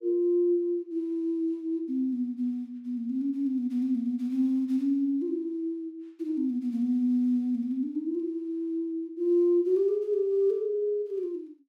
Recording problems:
none

